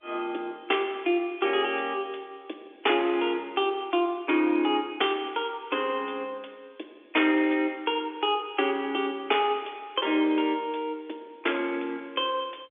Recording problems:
telephone audio; 280 Hz to 3.5 kHz, G.711

